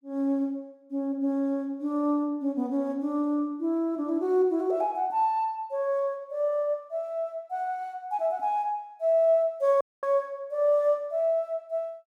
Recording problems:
dropout; at 10 s

